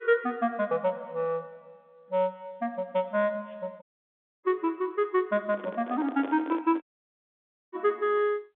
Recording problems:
phone line; 220 Hz to 3.7 kHz, G.711
audio cutting out; at 4 s for 0.5 s and at 7 s for 1 s
handling noise; from 5.5 to 7 s; peak -5 dB vs average level

